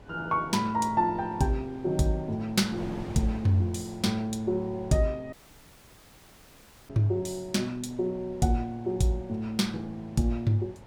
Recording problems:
wind on the microphone; below 680 Hz, SNR 19 dB
dropout; at 5.5 s for 1.5 s

